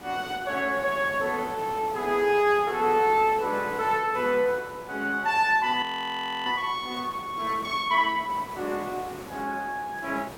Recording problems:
hiss; slope -6 dB per octave, SNR 16 dB
frozen audio; at 6 s for 0.5 s

